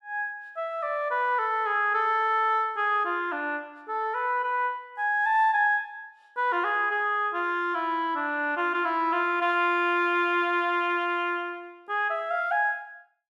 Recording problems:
none

